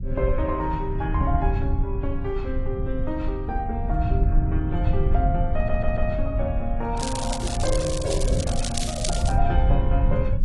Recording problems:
codec artefacts; AAC, then AAC, log-spectral distance 2 dB
rumble; below 86 Hz, SNR -3 dB
audio stuttering; at 5.5 s
crackle; from 7 to 9.5 s; loose cable, SNR 3 dB

